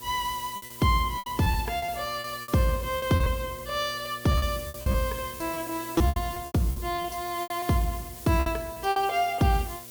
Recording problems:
hum; 60 Hz, harmonics up to 1.3 kHz, SNR 22 dB
hiss; slope +3 dB per octave, SNR 13 dB
packet loss; 13% of the sound replaced, filled with repeated pitch periods

